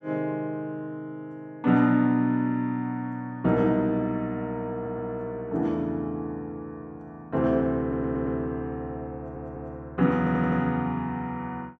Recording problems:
stutter; 4 times, first at 4.5 s

